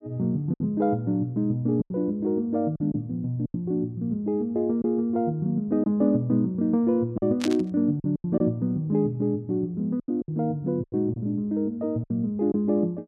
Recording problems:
lost packets; 6% of the sound replaced, filled with silence
burst of static; at 7.5 s; peak -1 dB vs average level

